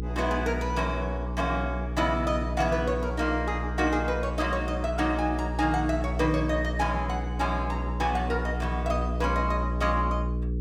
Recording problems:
electrical hum; 60 Hz, harmonics up to 480 Hz, SNR 3 dB

